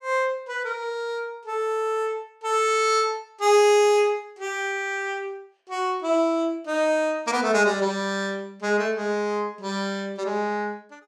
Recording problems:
none

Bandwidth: 14.5 kHz